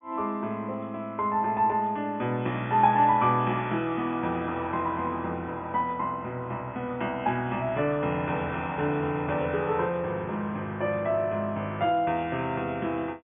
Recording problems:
treble missing; nothing above 3.5 kHz

